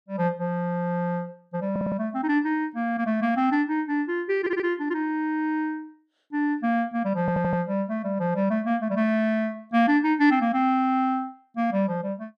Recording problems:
stutter; at 1.5 s, at 4.5 s and at 7 s

